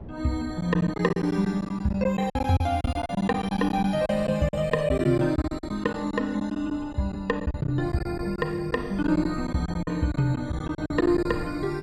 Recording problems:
wind on the microphone; below 280 Hz, SNR 15 dB
packet loss; 12% of the sound replaced, filled with silence

